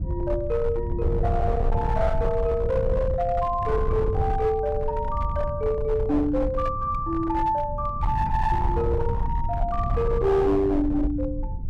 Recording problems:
distorted audio; hard clipping, signal-to-distortion ratio 12 dB
low-frequency rumble; below 100 Hz, SNR 4 dB

